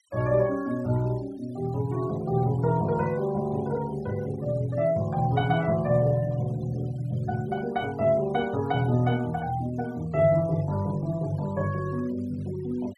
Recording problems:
denoising artefacts; signal-to-artefact ratio 23 dB

